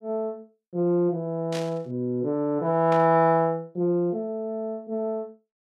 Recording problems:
static burst; at 1.5 s and at 3 s; peak -7 dB vs average level

